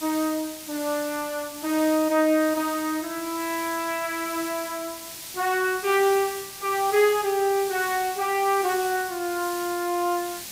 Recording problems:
background hiss; SNR 10 dB

